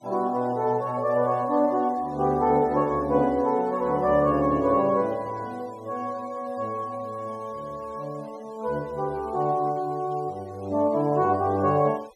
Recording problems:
noise reduction artefacts; signal-to-artefact ratio 28 dB

